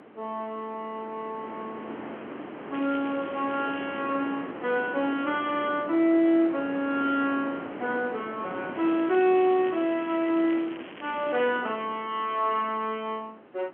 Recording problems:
phone line; 240 Hz to 3.3 kHz, G.711
wind on the microphone; below 1 kHz, SNR 12 dB
crackling; from 3 to 4 s and from 9 to 12 s; loose cable, SNR 21 dB

